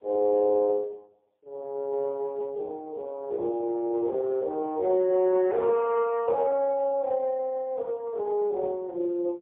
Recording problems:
telephone audio; 320 Hz to 2 kHz, AMR-NB, then MP3

